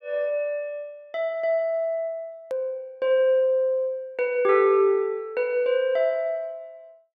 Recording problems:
click at an edit; at 2.5 s

